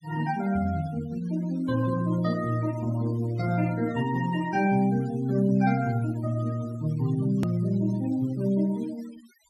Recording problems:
denoising artefacts; signal-to-artefact ratio 20 dB
click at an edit; at 7.5 s

